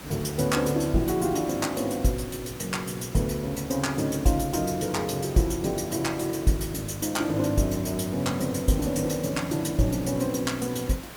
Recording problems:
hum; 60 Hz, harmonics up to 480 Hz, SNR 25 dB
hiss; slope -3 dB per octave, SNR 15 dB

